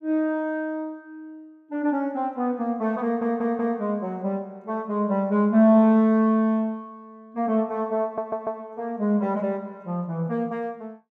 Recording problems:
stutter; at 3 s and at 8 s

